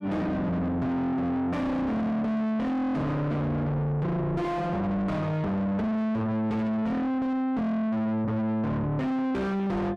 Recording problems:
distorted audio; soft clipping, signal-to-distortion ratio 6 dB

